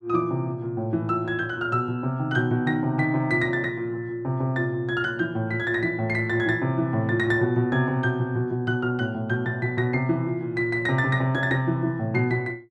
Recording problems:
none

